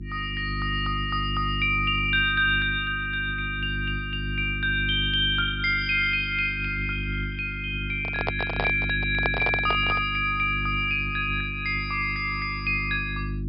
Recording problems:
treble missing; nothing above 5.5 kHz
hum; 50 Hz, harmonics up to 350 Hz, SNR 8 dB
microphone handling noise; from 8 to 10 s; peak +1 dB vs average level

